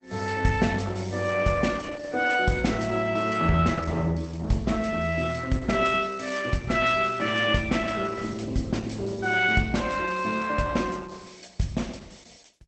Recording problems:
codec artefacts; Opus, log-spectral distance 5 dB, nothing above 8 kHz

